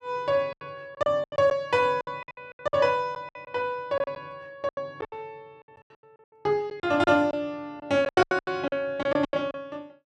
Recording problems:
packet loss; 16% of the sound replaced, filled with silence

